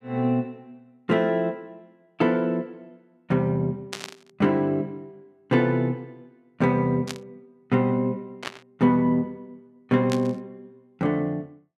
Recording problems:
burst of static; 4 times, first at 4 s; peak -3 dB vs average level

